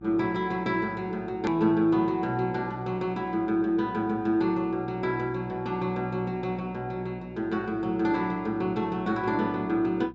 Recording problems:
low-pass filter; nothing above 8 kHz
hum; 60 Hz, harmonics up to 780 Hz, SNR 22 dB
edit click; at 1.5 s

